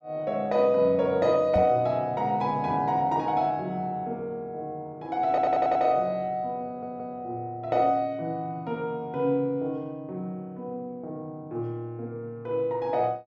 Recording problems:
microphone thump; at 1.5 s; peak +1 dB vs average level
stutter; at 5.5 s and at 6.5 s

